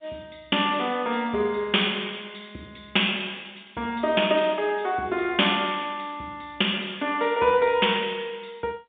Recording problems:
phone line; 280 Hz to 3.6 kHz, G.711

